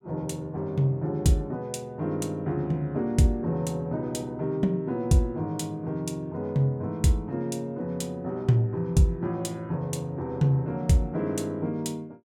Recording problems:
none

